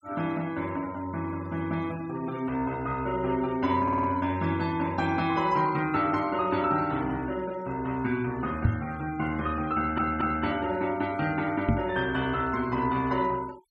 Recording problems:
denoising artefacts; signal-to-artefact ratio 21 dB
stutter; at 4 s and at 10 s
knock on the microphone; at 8.5 s and at 12 s; peak +8 dB vs average level

